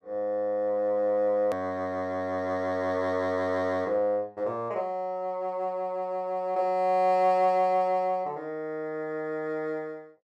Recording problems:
hard cut with a click; at 1.5 s

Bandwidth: 13 kHz